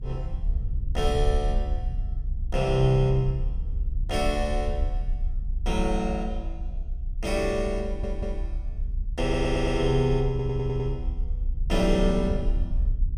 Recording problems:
low-frequency rumble; below 60 Hz, strongest tone 34 Hz, SNR 4 dB
stutter; at 8 s, at 9 s and at 10 s

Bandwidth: 15 kHz